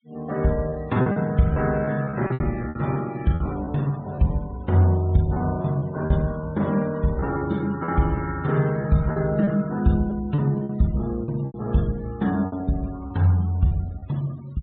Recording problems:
treble missing; nothing above 4 kHz
noise reduction artefacts; signal-to-artefact ratio 23 dB
lost packets; 9% of the sound replaced, filled with repeated pitch periods

